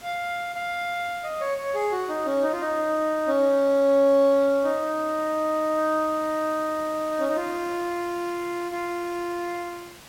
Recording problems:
hiss; slope -2 dB per octave, SNR 20 dB

